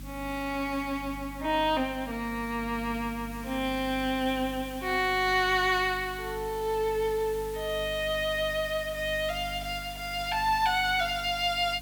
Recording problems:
mains hum; 50 Hz, harmonics up to 300 Hz, SNR 16 dB
background hiss; slope +1 dB per octave, SNR 18 dB

